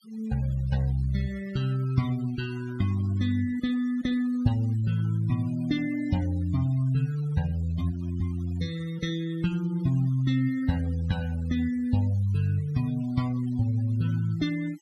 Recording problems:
noise reduction artefacts; signal-to-artefact ratio 21 dB

